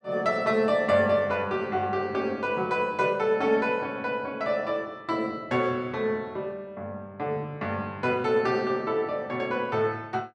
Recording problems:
none

